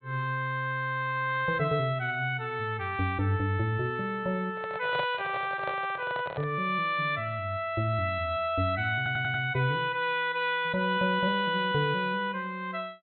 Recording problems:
treble missing; nothing above 4.2 kHz
handling noise; from 4.5 to 6.5 s; peak -1 dB vs average level
stutter; at 9 s

